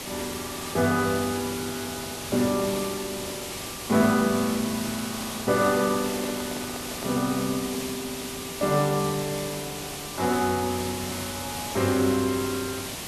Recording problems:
background hiss; SNR 6 dB
handling noise; from 5.5 to 7.5 s; peak -7 dB vs average level

